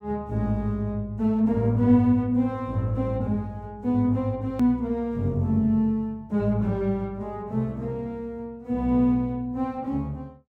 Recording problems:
hard cut with a click; at 4.5 s

